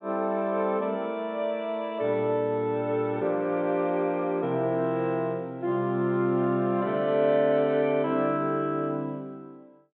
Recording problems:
treble missing; nothing above 4 kHz

